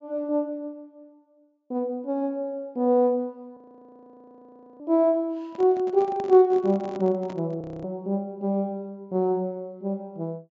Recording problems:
low-pass filter; nothing above 7.4 kHz
frozen audio; at 3.5 s for 1 s and at 7.5 s
microphone handling noise; from 5.5 to 7.5 s; peak -10 dB vs average level

